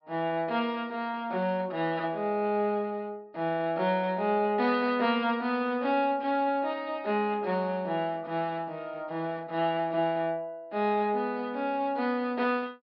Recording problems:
treble missing; nothing above 5.1 kHz

